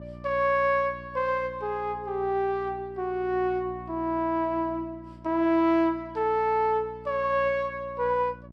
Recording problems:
hum; 60 Hz, harmonics up to 720 Hz, SNR 19 dB

